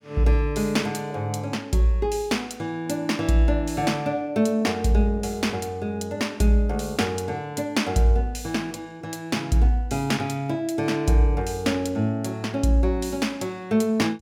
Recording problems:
none

